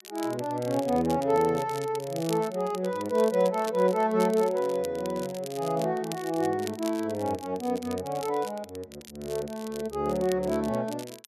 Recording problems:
crackling; vinyl, SNR 17 dB

